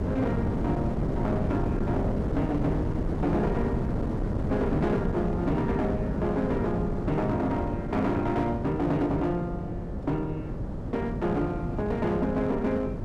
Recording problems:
distorted audio; hard clipping, uneven, signal-to-distortion ratio 11 dB
hum; 50 Hz, harmonics up to 600 Hz, SNR 16 dB
wind noise; below 310 Hz, SNR 2 dB

